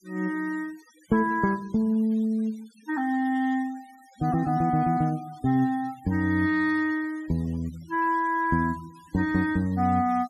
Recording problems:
denoising artefacts; signal-to-artefact ratio 26 dB

